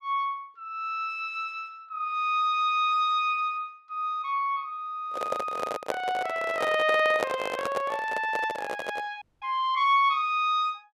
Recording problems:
microphone handling noise; from 5 to 9 s; peak +3 dB vs average level
audio cutting out; at 9 s

